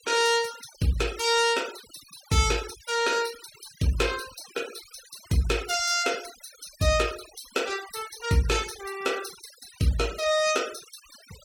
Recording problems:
noise reduction artefacts; signal-to-artefact ratio 16 dB

